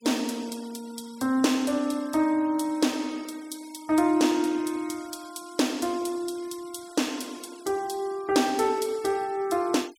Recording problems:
denoising artefacts; signal-to-artefact ratio 22 dB

